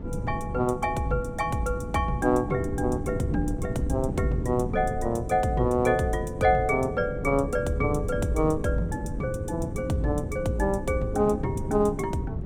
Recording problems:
wind on the microphone; below 230 Hz, SNR 7 dB

